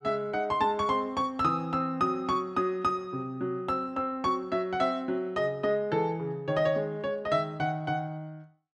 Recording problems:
none

